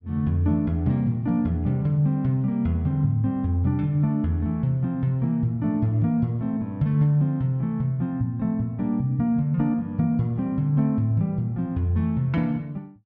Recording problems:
none

